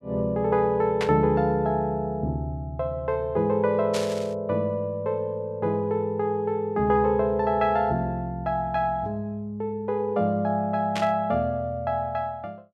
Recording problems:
static burst; at 1 s, at 4 s and at 11 s; peak -1 dB vs average level

